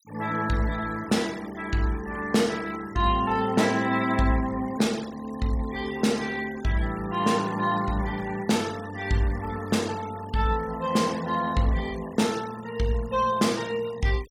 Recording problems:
noise reduction artefacts; signal-to-artefact ratio 18 dB

